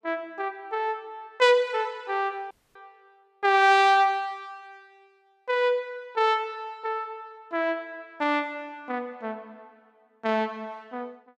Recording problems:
dropout; at 2.5 s

